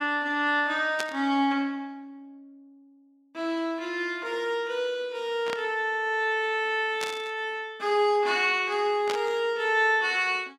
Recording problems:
burst of static; 4 times, first at 1 s; peak -1 dB vs average level

